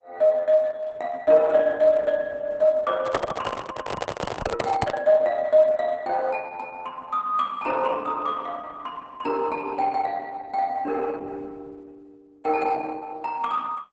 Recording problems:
lossy compression; Opus, log-spectral distance 3 dB, nothing above 7.8 kHz
handling noise; from 3 to 5 s; peak +2 dB vs average level

